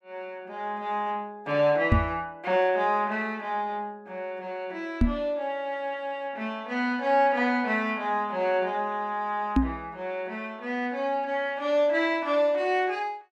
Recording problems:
microphone bump; at 2 s, at 5 s and at 9.5 s; peak +9 dB vs average level

